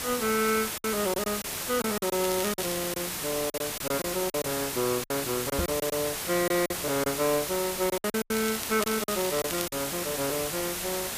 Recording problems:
background hiss; slope -1 dB per octave, SNR 2 dB
packet loss; 9% of the sound replaced, filled with silence
crackling; at 2 s and from 8.5 to 9.5 s; loose cable, SNR 8 dB
microphone thump; at 5.5 s; peak +1 dB vs average level

